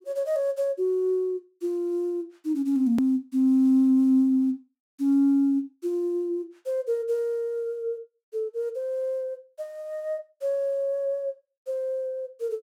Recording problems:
click at an edit; at 3 s

